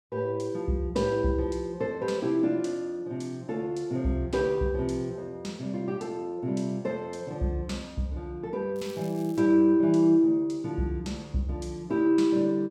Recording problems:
crackling; at 9 s; loose cable, SNR 25 dB

